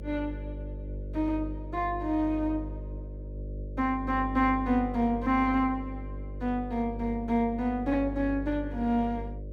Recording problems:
electrical hum; 50 Hz, harmonics up to 600 Hz, SNR 9 dB

